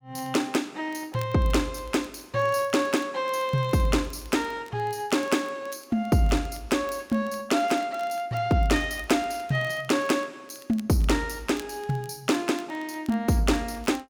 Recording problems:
crackle; vinyl, SNR 25 dB

